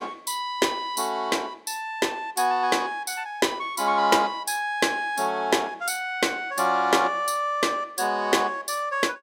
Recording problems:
none

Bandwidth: 16.5 kHz